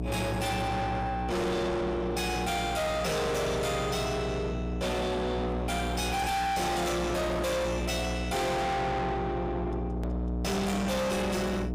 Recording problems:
distorted audio; soft clipping, signal-to-distortion ratio 6 dB
electrical hum; 60 Hz, harmonics up to 1.1 kHz, SNR 4 dB
click at an edit; at 10 s

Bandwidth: 15 kHz